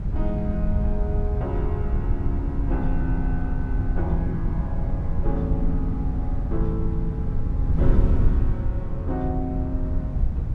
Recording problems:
wind on the microphone; below 88 Hz, SNR -5 dB

